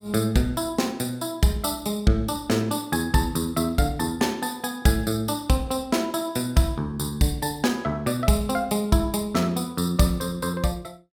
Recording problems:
none

